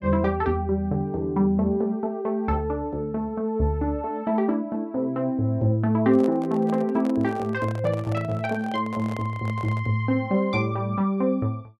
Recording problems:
microphone handling noise; from 6 to 10 s; peak -8 dB vs average level

